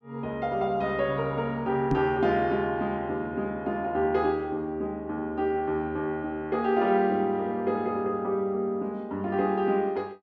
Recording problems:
microphone bump; at 2 s; peak +4 dB vs average level

